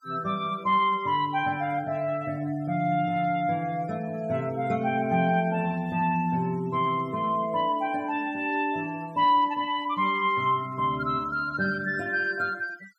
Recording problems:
noise reduction artefacts; signal-to-artefact ratio 23 dB

